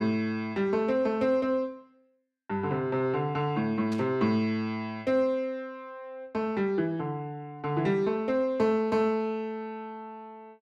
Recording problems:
burst of static; at 4 s; peak -11 dB vs average level

